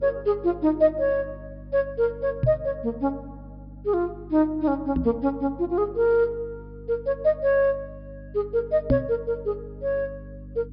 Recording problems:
low-pass filter; nothing above 5.5 kHz
electrical hum; 50 Hz, harmonics up to 300 Hz, SNR 18 dB
microphone thump; at 2.5 s, at 5 s and at 9 s; peak +6 dB vs average level

